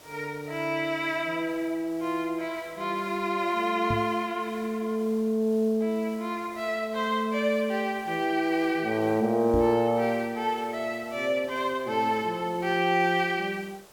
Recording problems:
hiss; SNR 23 dB
microphone thump; at 4 s and at 9.5 s; peak +1 dB vs average level

